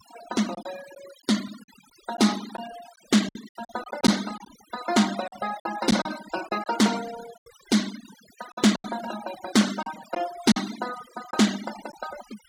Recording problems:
denoising artefacts; signal-to-artefact ratio 13 dB
lost packets; 8% of the sound replaced, filled with silence

